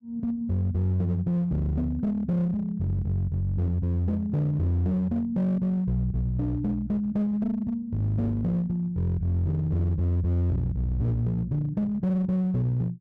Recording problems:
distorted audio; hard clipping, uneven, signal-to-distortion ratio 11 dB

